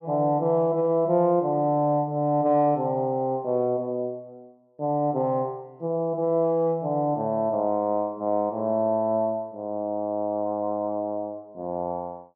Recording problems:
none

